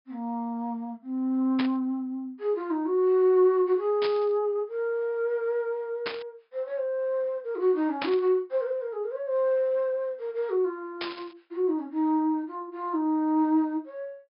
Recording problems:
low-pass filter; nothing above 5.5 kHz
static burst; 5 times, first at 1.5 s; peak -1 dB vs average level

